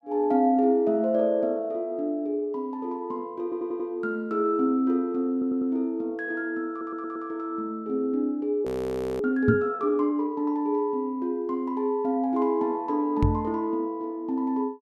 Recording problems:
audio stuttering; at 3.5 s, at 5.5 s and at 6.5 s
frozen audio; at 8.5 s for 0.5 s
microphone thump; at 9.5 s and at 13 s; peak +7 dB vs average level

